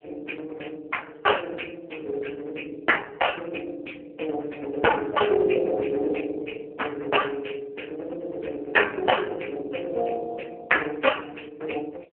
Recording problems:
phone line; 300 Hz to 3.2 kHz, AMR-NB

